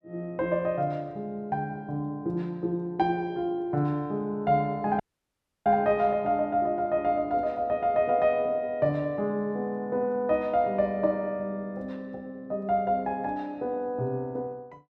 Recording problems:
audio cutting out; at 5 s for 0.5 s

